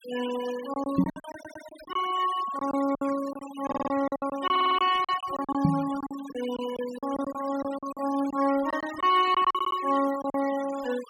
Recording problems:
noise reduction artefacts; signal-to-artefact ratio 15 dB
packet loss; 12% of the sound replaced, filled with silence
microphone bump; at 1 s and at 5.5 s; peak +9 dB vs average level
stutter; 4 times, first at 1.5 s

